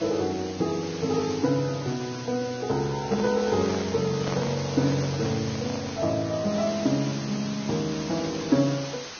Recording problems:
lossy codec; Vorbis, log-spectral distance 13 dB
hiss; slope -1 dB per octave, SNR 11 dB
handling noise; from 3 to 6 s; peak -2 dB vs average level

